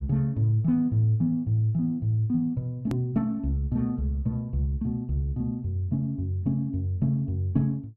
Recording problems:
edit click; at 3 s

